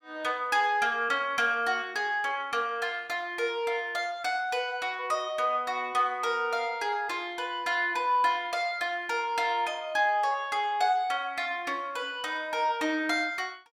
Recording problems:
none

